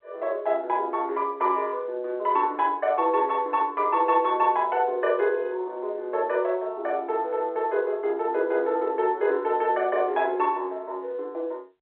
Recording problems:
telephone audio; 300 Hz to 3.6 kHz, G.711

